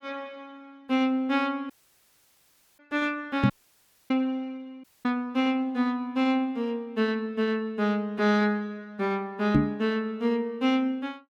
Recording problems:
audio cutting out; at 1.5 s for 1 s, at 3.5 s for 0.5 s and at 5 s
microphone thump; at 3.5 s and at 9.5 s; peak +9 dB vs average level

